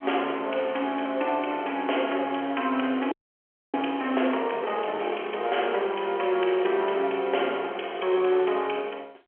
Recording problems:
phone line; 320 Hz to 3.2 kHz, G.711
audio freezing; at 3 s for 0.5 s
crackling; from 4 to 7 s; loose cable, SNR 23 dB

